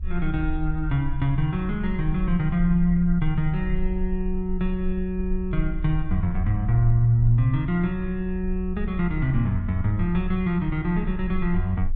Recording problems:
rumble; below 52 Hz, SNR 8 dB

